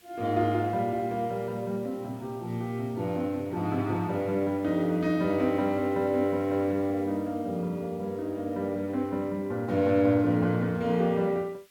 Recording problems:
background hiss; SNR 29 dB

